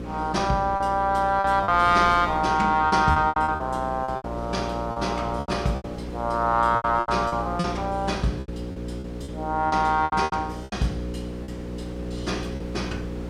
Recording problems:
electrical hum; 60 Hz, harmonics up to 540 Hz, SNR 10 dB
wind noise; below 910 Hz, SNR 19 dB
packet loss; 12% of the sound replaced, filled with repeated pitch periods

